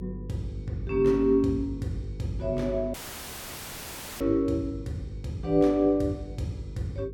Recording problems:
electrical hum; 50 Hz, harmonics up to 500 Hz, SNR 13 dB
audio cutting out; at 3 s for 1.5 s

